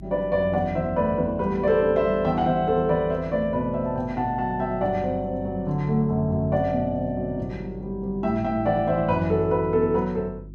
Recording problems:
hum; 50 Hz, harmonics up to 350 Hz, SNR 17 dB

